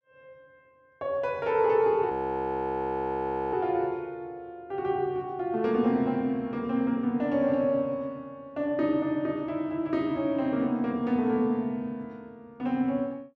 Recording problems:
frozen audio; at 2 s for 1.5 s

